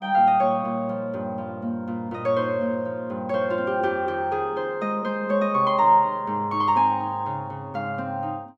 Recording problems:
none

